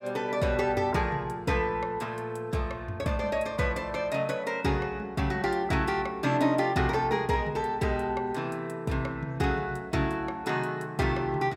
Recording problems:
none

